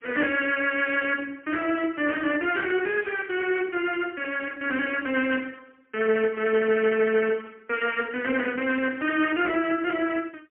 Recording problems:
telephone audio; 260 Hz to 3.1 kHz, AMR-NB, then MP3

